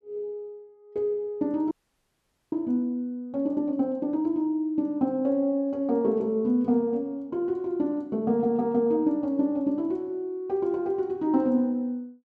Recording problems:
audio freezing; at 1.5 s for 1 s

